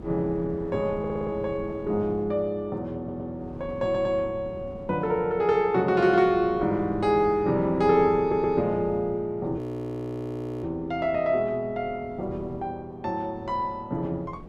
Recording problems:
wind noise; below 330 Hz, SNR 17 dB
stutter; 4 times, first at 1 s
frozen audio; at 9.5 s for 1 s

